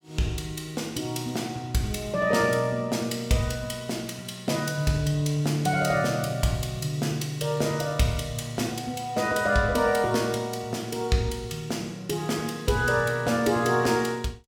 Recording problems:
none

